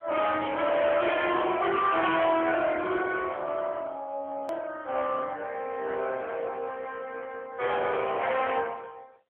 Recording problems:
telephone audio; 320 Hz to 3.4 kHz, AMR-NB
distorted audio; hard clipping, uneven, signal-to-distortion ratio 8 dB
click at an edit; at 4.5 s

